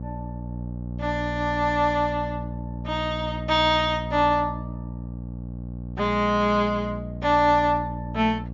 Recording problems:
low-pass filter; nothing above 7.2 kHz
electrical hum; 60 Hz, harmonics up to 600 Hz, SNR 10 dB

